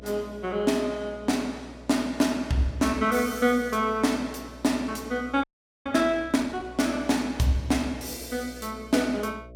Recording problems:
hum; 60 Hz, harmonics up to 660 Hz, SNR 20 dB
audio freezing; at 5.5 s

